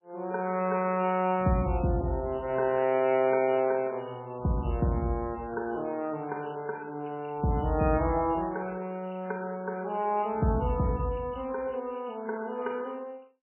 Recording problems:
lossy compression; MP3, log-spectral distance 6 dB, nothing above 2.6 kHz

